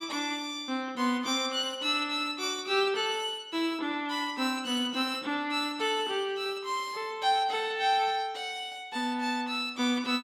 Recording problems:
none

